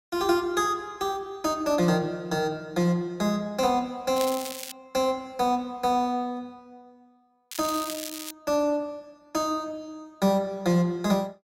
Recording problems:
crackling; at 4 s and at 7.5 s; loose cable, SNR 9 dB

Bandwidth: 16 kHz